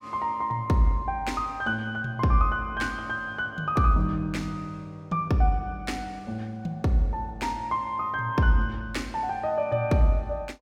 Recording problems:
none

